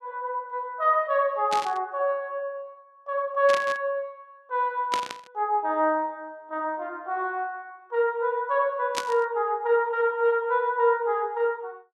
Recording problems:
burst of static; 4 times, first at 1.5 s; peak +1 dB vs average level

